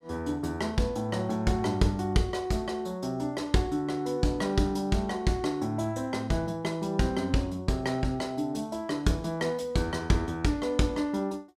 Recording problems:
none

